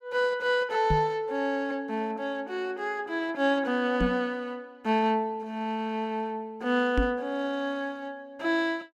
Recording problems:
microphone bump; at 1 s, at 4 s and at 7 s; peak +5 dB vs average level

